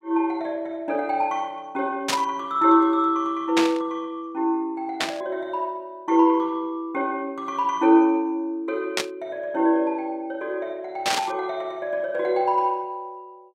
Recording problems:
burst of static; 5 times, first at 2 s; peak +4 dB vs average level

